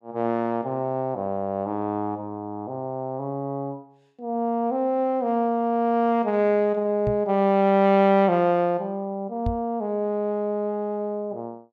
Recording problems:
microphone thump; at 7 s and at 9.5 s; peak -1 dB vs average level

